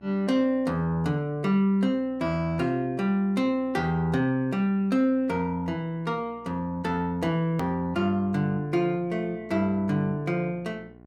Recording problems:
hum; 60 Hz, harmonics up to 1.5 kHz, SNR 26 dB
edit click; at 7.5 s

